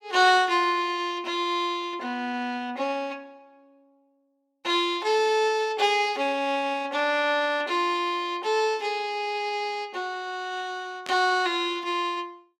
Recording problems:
burst of static; at 11 s; peak -9 dB vs average level

